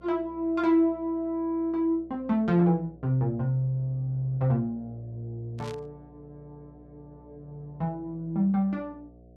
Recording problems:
electrical hum; 60 Hz, harmonics up to 720 Hz, SNR 25 dB
static burst; at 5.5 s; peak -13 dB vs average level

